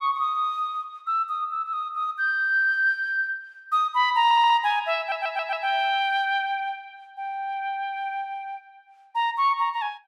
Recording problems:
audio stuttering; at 4.5 s and at 5 s

